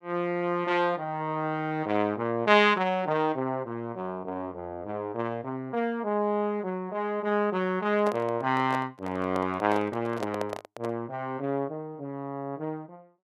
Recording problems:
microphone handling noise; from 8 to 11 s; peak -1 dB vs average level

